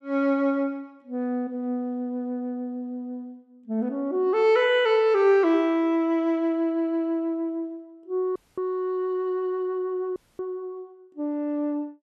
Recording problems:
audio cutting out; at 8.5 s and at 10 s

